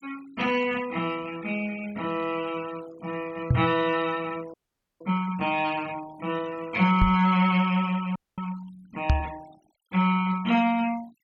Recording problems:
noise reduction artefacts; signal-to-artefact ratio 20 dB
microphone bump; at 3.5 s, at 7 s and at 9 s; peak +7 dB vs average level
audio freezing; at 4.5 s and at 8 s

